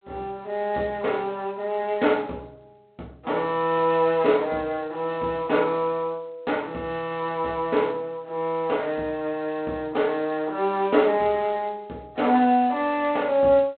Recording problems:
phone line; 220 Hz to 3.7 kHz, G.726

